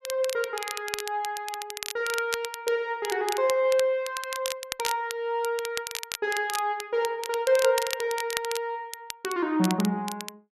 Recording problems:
crackle; vinyl, SNR 8 dB

